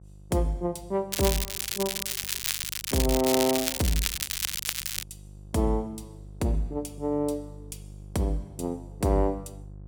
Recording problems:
mains hum; 50 Hz, harmonics up to 550 Hz, SNR 18 dB
crackling; from 1 to 5 s; loose cable, SNR 0 dB

